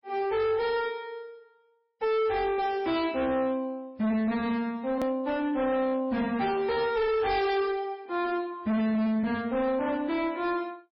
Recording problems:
codec artefacts; MP3, log-spectral distance 2 dB, nothing above 18.9 kHz
distorted audio; hard clipping, signal-to-distortion ratio 8 dB
click at an edit; at 5 s

